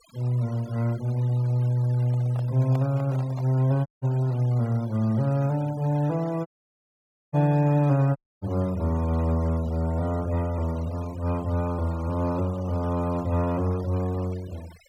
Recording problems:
noise reduction artefacts; signal-to-artefact ratio 23 dB
handling noise; from 2 to 3.5 s; peak -11 dB vs average level
audio cutting out; at 4 s, at 6.5 s for 1 s and at 8 s

